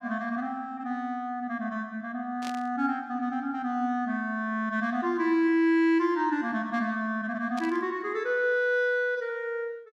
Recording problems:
burst of static; at 2.5 s and at 7.5 s; peak -8 dB vs average level

